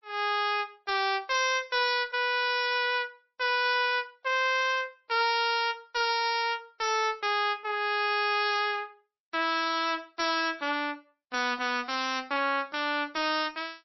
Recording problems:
codec artefacts; MP3, log-spectral distance 5 dB, nothing above 5.7 kHz
distortion; hard clipping, signal-to-distortion ratio 8 dB

